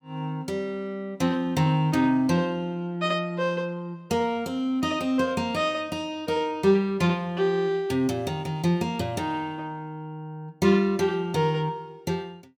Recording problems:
none

